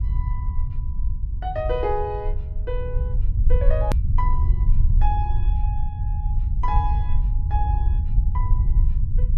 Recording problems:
low-frequency rumble; below 66 Hz, SNR -7 dB
click at an edit; at 4 s

